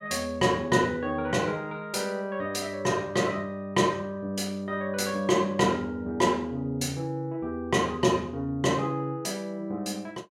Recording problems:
none

